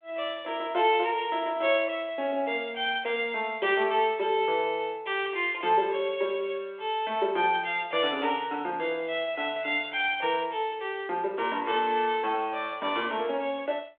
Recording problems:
telephone audio; 300 Hz to 3.4 kHz, G.726

